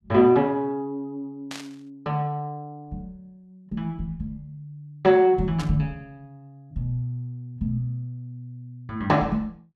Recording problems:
burst of static; at 1.5 s and at 5.5 s; peak -7 dB vs average level

